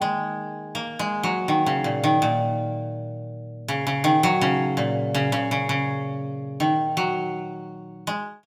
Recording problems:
none

